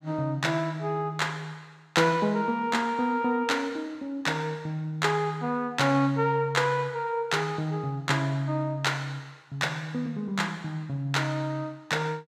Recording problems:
none

